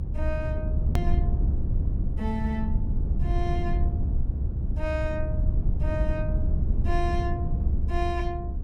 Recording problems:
low-frequency rumble; below 88 Hz, SNR -6 dB
hard cut with a click; at 1 s

